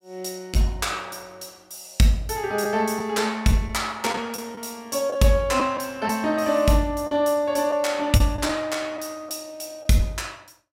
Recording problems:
lost packets; 3% of the sound replaced, filled with the last packet

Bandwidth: 16 kHz